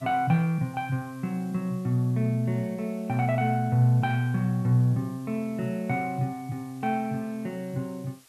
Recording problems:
hiss; slope 0 dB per octave, SNR 28 dB

